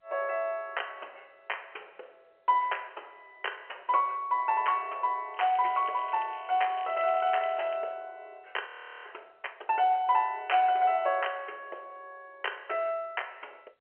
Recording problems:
phone line; 340 Hz to 3.2 kHz, G.711
crackle; from 5.5 to 8 s; loose cable, SNR 21 dB
audio freezing; at 8.5 s

